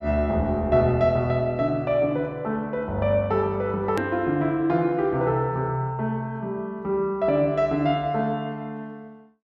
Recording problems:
click at an edit; at 4 s

